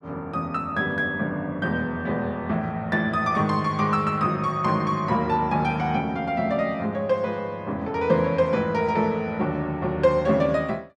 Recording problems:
none

